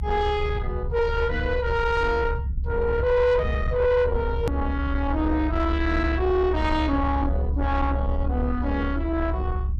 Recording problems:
distortion; soft clipping, signal-to-distortion ratio 12 dB
rumble; below 76 Hz, strongest tone 68 Hz, SNR 3 dB
hard cut with a click; at 4.5 s

